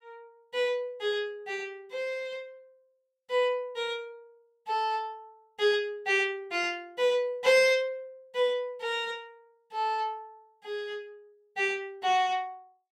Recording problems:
none

